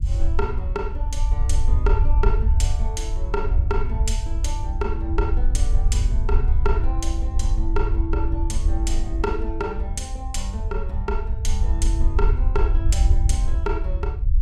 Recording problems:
rumble; below 64 Hz, SNR -6 dB

